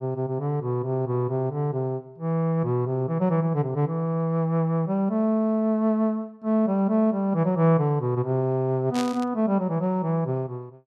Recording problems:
static burst; at 9 s; peak -6 dB vs average level

